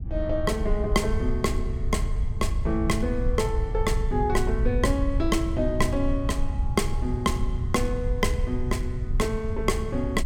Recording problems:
rumble; below 80 Hz, SNR 2 dB

